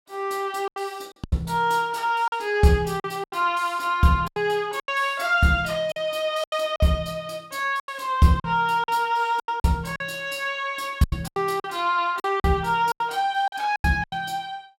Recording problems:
packet loss; 11% of the sound replaced, filled with silence

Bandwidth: 16.5 kHz